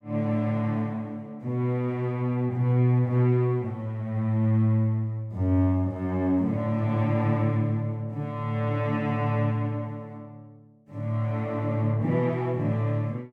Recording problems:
none

